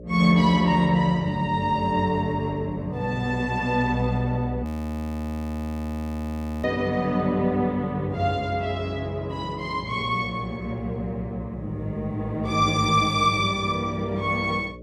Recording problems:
hum; 60 Hz, harmonics up to 600 Hz, SNR 18 dB
audio freezing; at 4.5 s for 2 s

